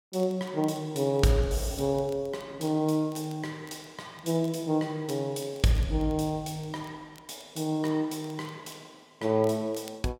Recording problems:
crackling; vinyl, SNR 27 dB

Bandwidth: 16.5 kHz